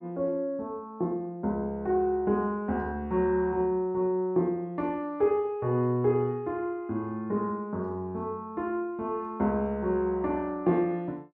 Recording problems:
none

